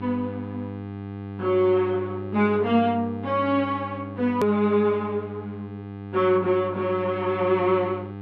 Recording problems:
hum; 50 Hz, harmonics up to 1.3 kHz, SNR 12 dB
edit click; at 4.5 s

